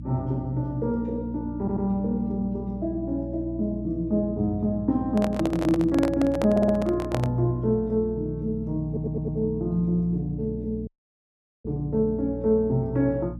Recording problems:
hum; 60 Hz, harmonics up to 300 Hz, SNR 11 dB
audio stuttering; at 1.5 s, at 6.5 s and at 9 s
handling noise; from 5 to 7.5 s; peak 0 dB vs average level
dropout; at 11 s for 1 s

